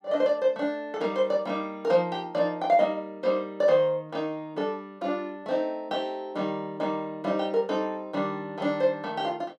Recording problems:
none

